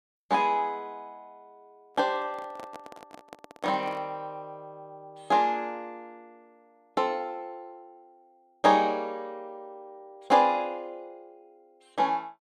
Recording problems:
handling noise; from 2 to 4 s; peak -12 dB vs average level

